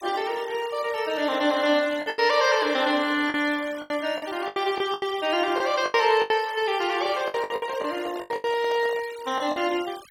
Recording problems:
denoising artefacts; signal-to-artefact ratio 18 dB
lost packets; 11% of the sound replaced, filled with the last packet
microphone handling noise; from 7 to 9 s; peak -10 dB vs average level

